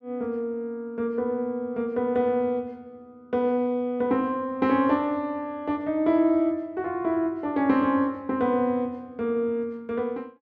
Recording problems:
none

